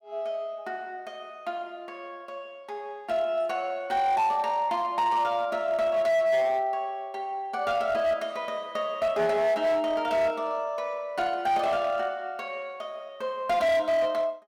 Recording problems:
distorted audio; hard clipping, signal-to-distortion ratio 11 dB

